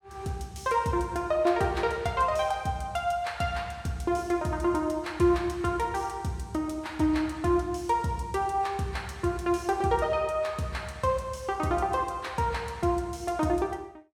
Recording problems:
none

